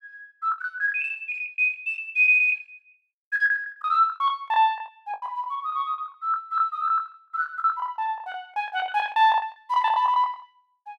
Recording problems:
packet loss; 20% of the sound replaced, filled with the last packet

